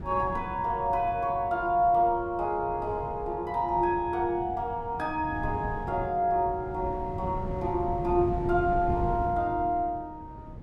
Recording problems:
wind noise; below 210 Hz, SNR 10 dB

